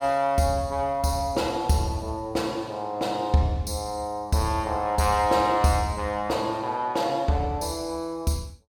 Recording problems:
none

